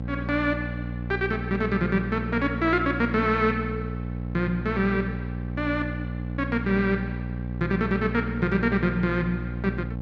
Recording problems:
mains hum; 60 Hz, harmonics up to 780 Hz, SNR 6 dB

